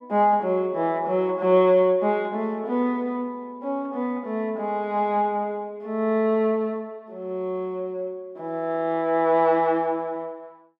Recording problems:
none

